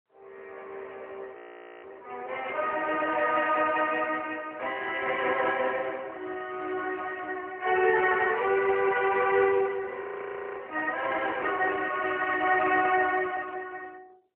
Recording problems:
phone line; 320 Hz to 3.1 kHz, AMR-NB
frozen audio; at 1.5 s and at 10 s for 0.5 s

